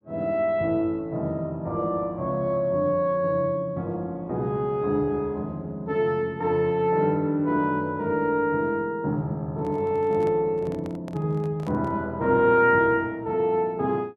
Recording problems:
microphone handling noise; from 9.5 to 12 s; peak -11 dB vs average level

